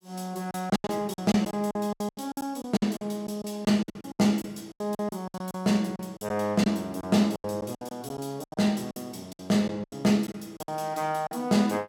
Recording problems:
lost packets; 16% of the sound replaced, filled with silence

